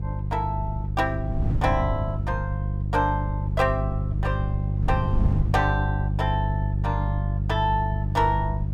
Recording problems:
hum; 50 Hz, harmonics up to 350 Hz, SNR -1 dB
wind noise; below 130 Hz, SNR 6 dB

